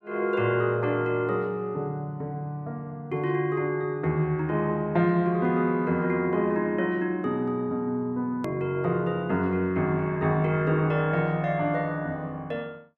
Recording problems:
click at an edit; at 8.5 s

